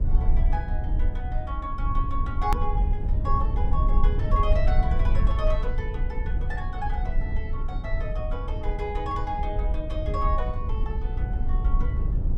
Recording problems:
low-frequency rumble; below 60 Hz, SNR -6 dB
click at an edit; at 2.5 s

